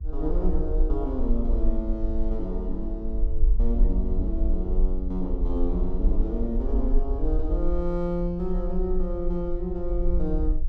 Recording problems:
rumble; below 44 Hz, strongest tone 22 Hz, SNR -2 dB

